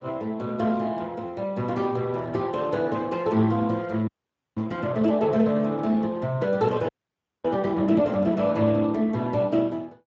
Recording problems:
lossy codec; Speex, log-spectral distance 3 dB
frozen audio; at 4 s for 0.5 s and at 7 s for 0.5 s

